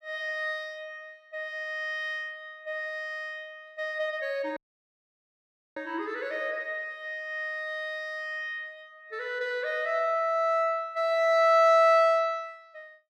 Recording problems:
dropout; at 4.5 s for 1 s

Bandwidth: 14.5 kHz